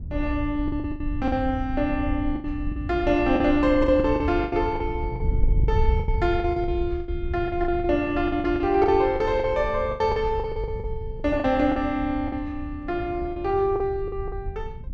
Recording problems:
wind noise; below 82 Hz, SNR 8 dB
lost packets; 13% of the sound replaced, filled with the last packet

